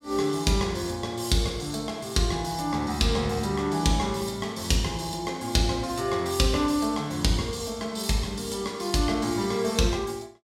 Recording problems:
none

